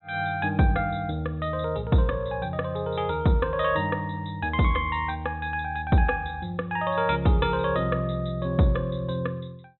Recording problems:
treble cut off; nothing above 3.9 kHz

